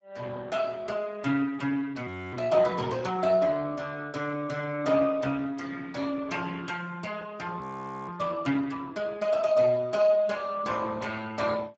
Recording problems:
lossy compression; Speex, log-spectral distance 4 dB
frozen audio; at 2 s and at 7.5 s

